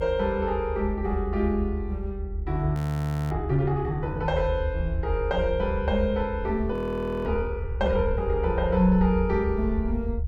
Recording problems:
rumble; below 78 Hz, SNR 5 dB
audio freezing; at 3 s for 0.5 s and at 6.5 s for 0.5 s

